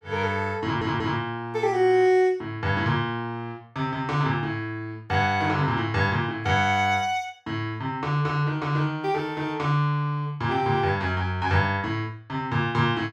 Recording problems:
stutter; at 0.5 s

